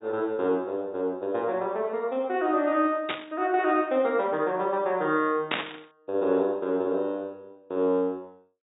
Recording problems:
low-pass filter; nothing above 4 kHz
static burst; at 3 s and at 5.5 s; peak +3 dB vs average level

